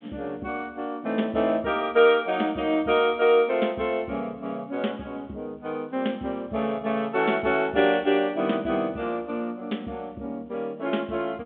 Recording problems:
phone line; 150 Hz to 3.5 kHz, G.726

